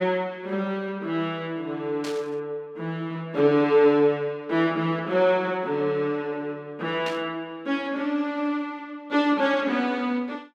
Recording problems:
static burst; at 2 s and at 7 s; peak -6 dB vs average level

